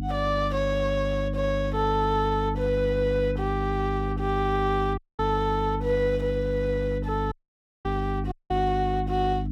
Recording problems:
electrical hum; 50 Hz, harmonics up to 300 Hz, SNR 4 dB
audio cutting out; at 5 s, at 7.5 s for 0.5 s and at 8.5 s

